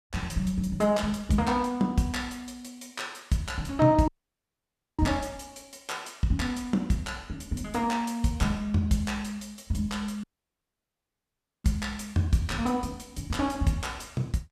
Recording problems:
audio cutting out; at 4 s for 1 s and at 10 s for 1.5 s

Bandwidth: 14.5 kHz